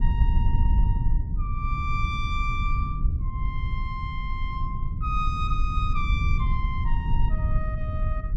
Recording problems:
rumble; below 80 Hz, SNR -6 dB

